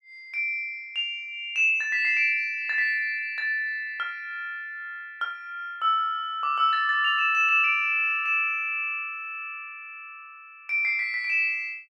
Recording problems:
none

